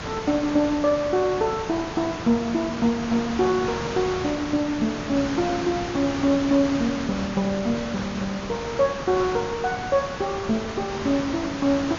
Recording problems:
treble cut off; nothing above 7 kHz
hiss; slope -4 dB per octave, SNR 8 dB

